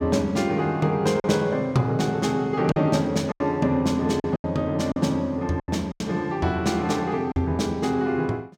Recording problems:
packet loss; 6% of the sound replaced, filled with silence

